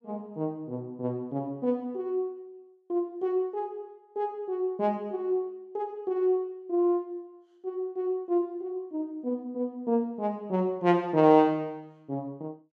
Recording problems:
none

